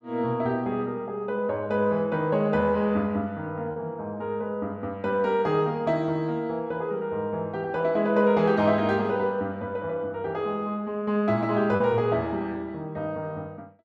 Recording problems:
lost packets; 0.6% of the sound replaced, filled with repeated pitch periods

